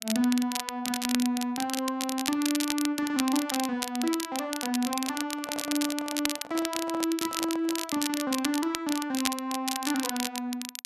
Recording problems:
crackle; vinyl, SNR 3 dB
handling noise; from 5 to 8 s; peak -5 dB vs average level

